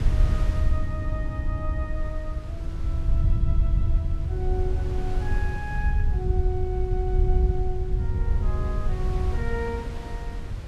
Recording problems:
low-frequency rumble; below 80 Hz, SNR -8 dB
wind on the microphone; below 500 Hz, SNR 7 dB

